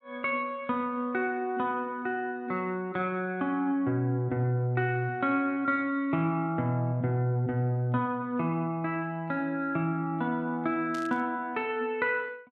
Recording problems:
burst of static; at 11 s; peak -11 dB vs average level

